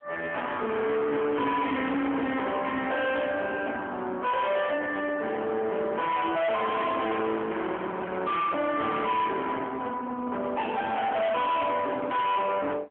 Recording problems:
telephone audio; 240 Hz to 3.5 kHz, AMR-NB
distortion; hard clipping, uneven, signal-to-distortion ratio 6 dB

